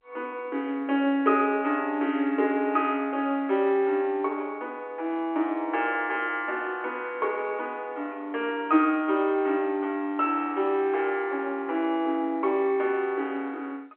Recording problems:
telephone audio; 240 Hz to 3.4 kHz, G.711

